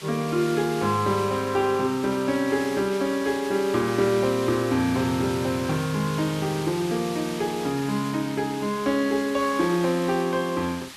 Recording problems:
background hiss; slope 0 dB per octave, SNR 13 dB

